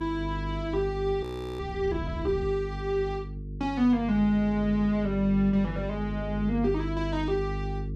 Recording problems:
electrical hum; 50 Hz, harmonics up to 450 Hz, SNR 7 dB
audio freezing; at 1 s

